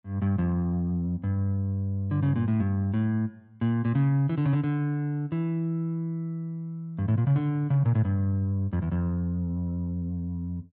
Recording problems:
none

